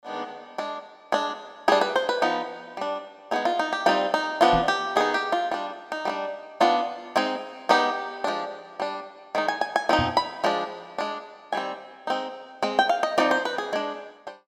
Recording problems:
microphone bump; at 4.5 s and at 10 s; peak 0 dB vs average level

